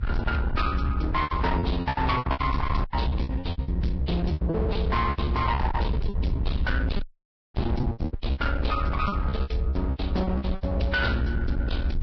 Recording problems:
lossy compression; Vorbis, log-spectral distance 2 dB, nothing above 5.2 kHz
distortion; hard clipping, signal-to-distortion ratio 7 dB
low-frequency rumble; below 98 Hz, SNR 0 dB
packet loss; 19% of the sound replaced, filled with repeated pitch periods
dropout; at 7 s for 0.5 s

